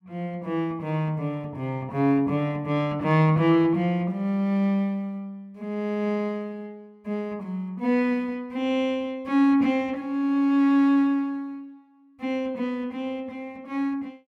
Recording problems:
none

